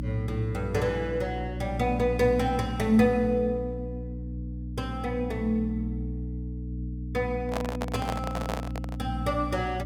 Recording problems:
mains hum; 60 Hz, harmonics up to 300 Hz, SNR 6 dB
microphone handling noise; from 7.5 to 9 s; peak +1 dB vs average level

